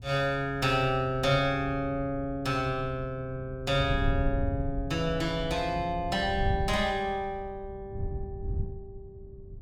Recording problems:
wind noise; below 100 Hz, SNR 9 dB

